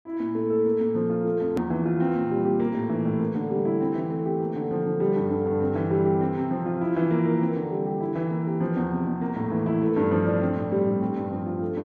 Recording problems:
hard cut with a click; at 1.5 s

